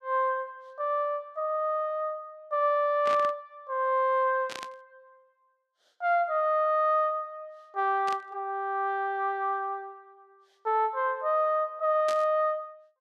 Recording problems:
burst of static; 4 times, first at 3 s; peak -7 dB vs average level

